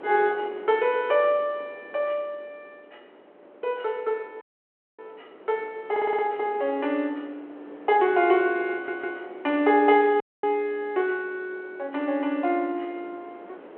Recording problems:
telephone audio; 320 Hz to 3.4 kHz, G.726
wind noise; below 720 Hz, SNR 21 dB
audio cutting out; at 4.5 s for 0.5 s and at 10 s
audio stuttering; at 6 s and at 8.5 s

